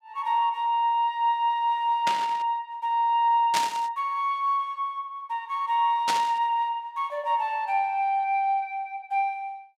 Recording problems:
static burst; at 2 s, at 3.5 s and at 6 s; peak +2 dB vs average level

